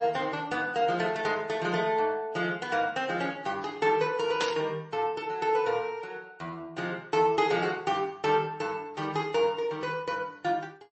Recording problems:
codec artefacts; MP3, log-spectral distance 2 dB, nothing above 8 kHz
burst of static; at 4.5 s; peak +2 dB vs average level

